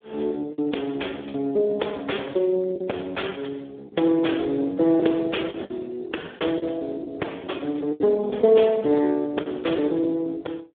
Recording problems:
telephone audio; 260 Hz to 3.5 kHz, Speex
packet loss; 5% of the sound replaced, filled with the last packet

